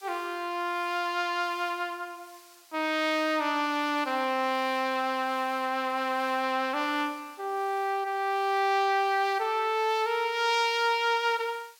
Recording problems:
hiss; SNR 25 dB

